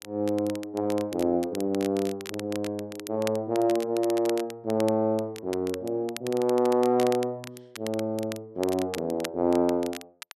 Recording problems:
crackle; vinyl, SNR 15 dB

